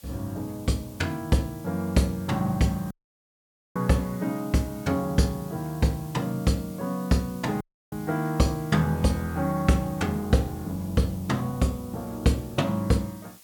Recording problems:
hiss; SNR 21 dB
dropout; at 3 s for 1 s and at 7.5 s

